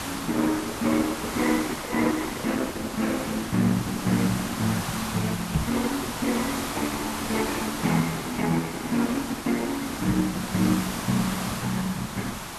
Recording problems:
lossy codec; Opus, log-spectral distance 3 dB
hiss; SNR 5 dB
microphone thump; at 5.5 s and at 10 s; peak +6 dB vs average level

